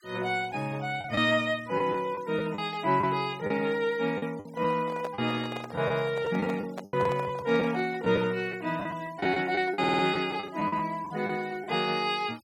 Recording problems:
denoising artefacts; signal-to-artefact ratio 23 dB
lost packets; 7% of the sound replaced, filled with the last packet
microphone handling noise; from 4.5 to 8 s; peak -5 dB vs average level
audio stuttering; at 10 s

